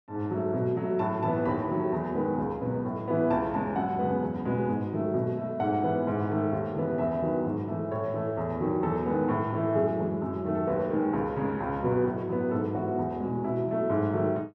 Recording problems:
none

